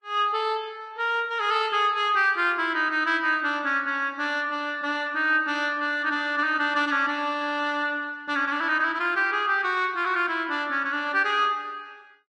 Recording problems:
lossy compression; Vorbis, log-spectral distance 2 dB

